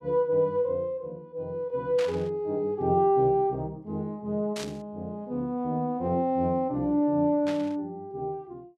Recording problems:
static burst; at 2 s, at 4.5 s and at 7.5 s; peak -6 dB vs average level

